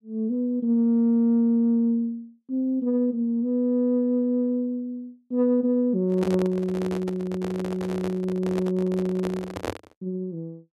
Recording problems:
microphone handling noise; from 6 to 10 s; peak -1 dB vs average level

